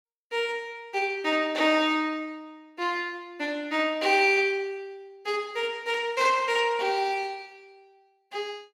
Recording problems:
none

